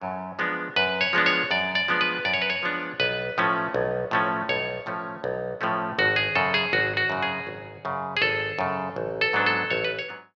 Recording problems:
none

